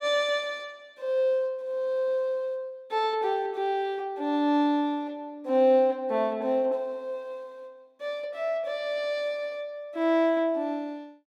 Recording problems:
none

